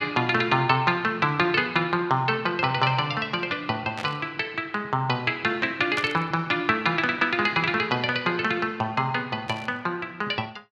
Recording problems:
static burst; at 4 s, at 6 s and at 9.5 s; peak -6 dB vs average level

